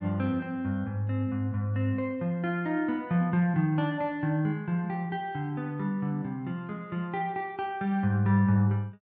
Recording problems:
none

